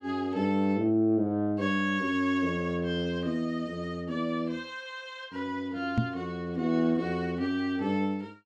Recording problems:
knock on the microphone; at 6 s; peak +7 dB vs average level

